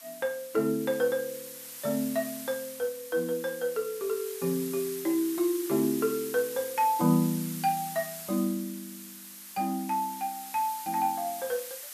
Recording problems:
background hiss; slope +3 dB per octave, SNR 10 dB

